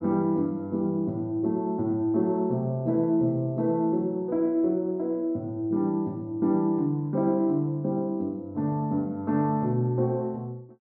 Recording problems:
none

